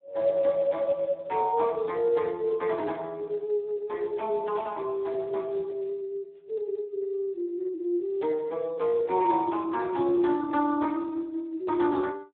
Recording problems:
telephone audio; 220 Hz to 3.7 kHz, Speex

